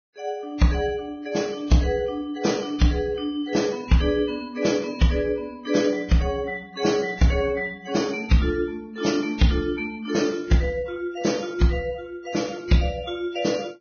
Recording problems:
codec artefacts; Vorbis, log-spectral distance 3 dB, nothing above 6.3 kHz

